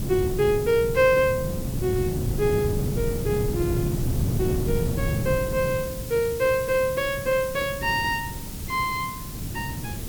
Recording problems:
background hiss; slope +1 dB per octave, SNR 13 dB
wind on the microphone; below 190 Hz, SNR 5 dB

